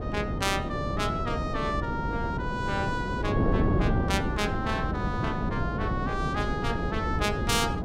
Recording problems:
wind noise; below 350 Hz, SNR -1 dB

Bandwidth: 16 kHz